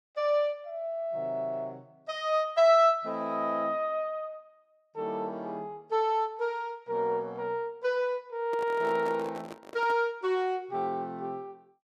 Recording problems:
handling noise; from 8.5 to 10 s; peak -7 dB vs average level

